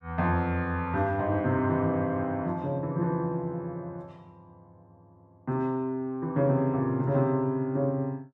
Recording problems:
none

